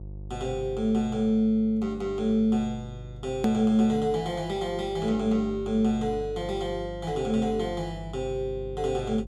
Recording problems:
hum; 50 Hz, harmonics up to 550 Hz, SNR 15 dB
click at an edit; at 3.5 s

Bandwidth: 14 kHz